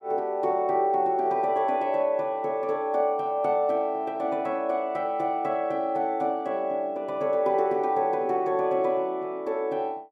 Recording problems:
none

